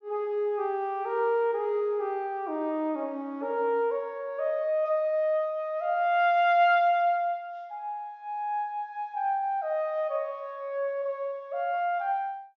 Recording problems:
treble cut off; nothing above 7.2 kHz

